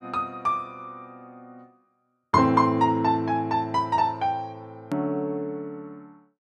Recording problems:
click at an edit; at 5 s

